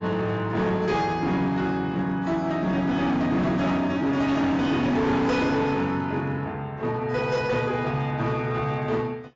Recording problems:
lossy compression; AAC, log-spectral distance 2 dB, nothing above 7.3 kHz
distorted audio; hard clipping, signal-to-distortion ratio 10 dB

